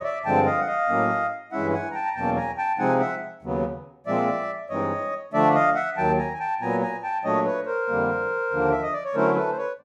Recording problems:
none

